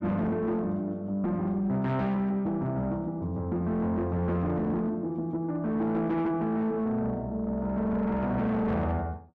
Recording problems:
distorted audio; soft clipping, signal-to-distortion ratio 10 dB

